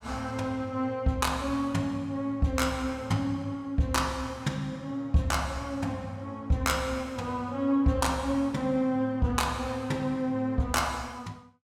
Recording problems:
none

